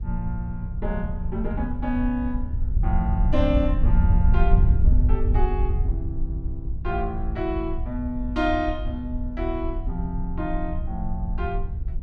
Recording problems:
wind on the microphone; below 72 Hz, SNR -2 dB

